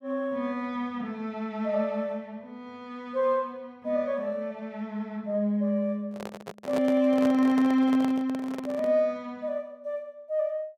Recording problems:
microphone handling noise; from 6 to 9 s; peak -2 dB vs average level

